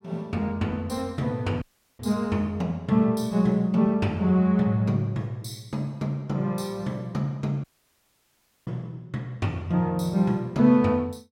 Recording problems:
dropout; at 1.5 s and at 7.5 s for 1 s

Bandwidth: 16.5 kHz